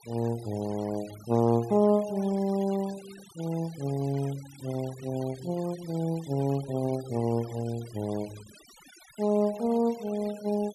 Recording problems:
denoising artefacts; signal-to-artefact ratio 20 dB

